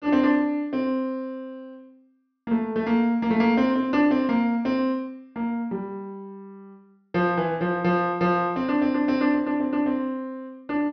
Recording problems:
treble cut off; nothing above 6.2 kHz

